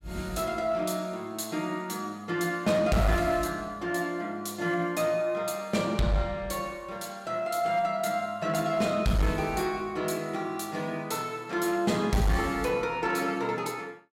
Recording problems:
distorted audio; hard clipping, uneven, signal-to-distortion ratio 11 dB

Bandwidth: 16 kHz